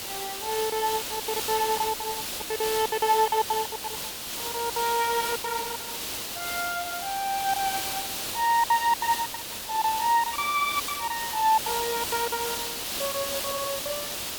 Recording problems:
hiss; SNR 3 dB
lost packets; 15% of the sound replaced, filled with silence
audio stuttering; at 13 s

